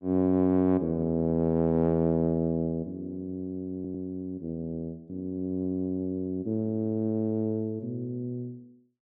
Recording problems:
stutter; at 4 s

